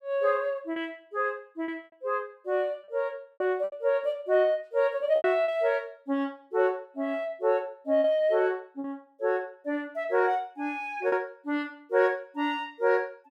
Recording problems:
lost packets; 4% of the sound replaced, filled with repeated pitch periods

